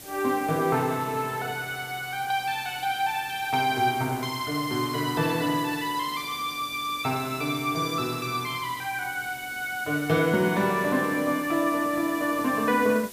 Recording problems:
hiss; SNR 15 dB
crackling; from 3.5 to 5 s; loose cable, SNR 30 dB

